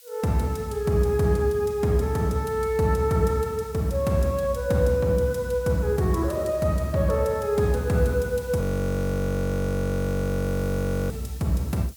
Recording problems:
hiss; slope +4 dB per octave, SNR 24 dB
frozen audio; at 8.5 s for 2.5 s

